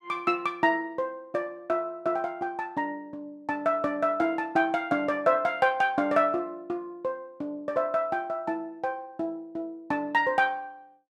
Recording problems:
none

